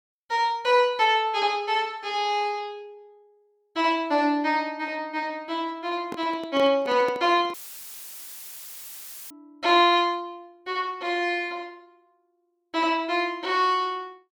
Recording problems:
microphone handling noise; from 6 to 7.5 s; peak -7 dB vs average level
audio cutting out; at 7.5 s for 2 s; filled with static

